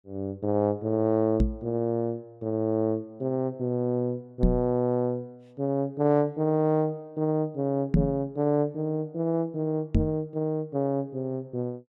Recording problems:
microphone bump; 4 times, first at 1.5 s; peak +9 dB vs average level

